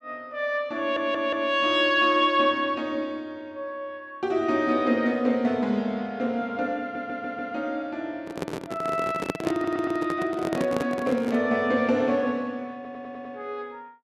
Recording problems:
stutter; 4 times, first at 1 s
microphone handling noise; from 8 to 11 s; peak +2 dB vs average level

